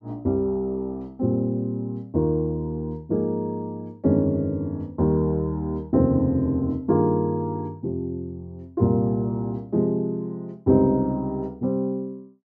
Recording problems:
none

